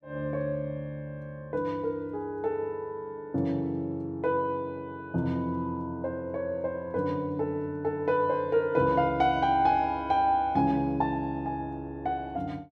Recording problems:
none

